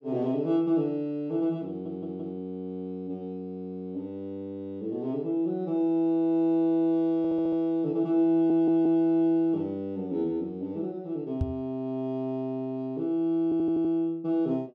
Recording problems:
stutter; 4 times, first at 1.5 s
microphone bump; at 11 s; peak +3 dB vs average level

